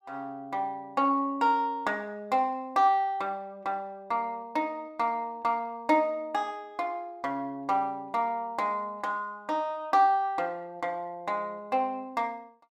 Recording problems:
none

